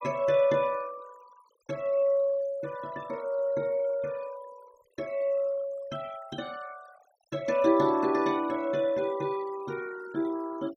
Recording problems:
denoising artefacts; signal-to-artefact ratio 23 dB

